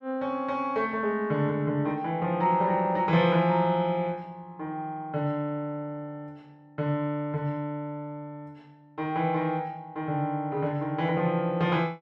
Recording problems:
none

